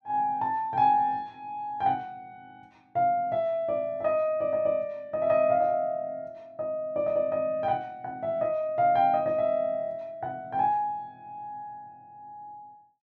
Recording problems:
none

